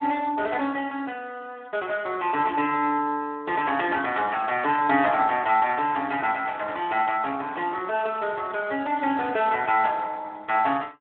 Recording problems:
phone line; 220 Hz to 3.5 kHz, Speex

